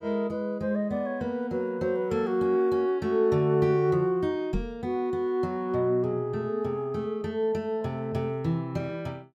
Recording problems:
knock on the microphone; at 4.5 s; peak +1 dB vs average level

